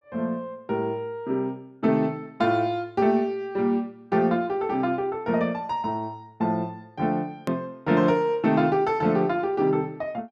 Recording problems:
edit click; at 7.5 s

